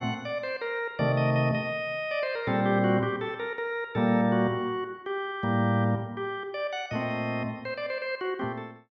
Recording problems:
none

